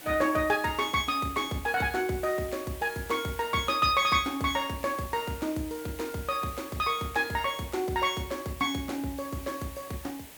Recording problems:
hiss; SNR 16 dB

